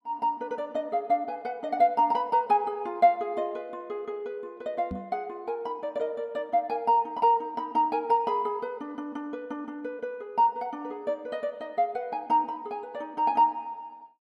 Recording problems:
microphone thump; at 5 s; peak -3 dB vs average level

